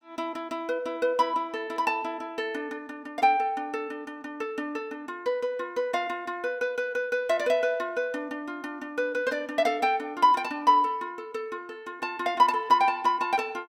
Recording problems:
none

